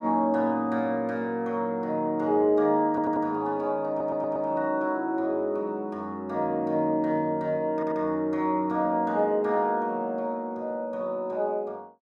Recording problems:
stutter; at 3 s, at 4 s and at 7.5 s

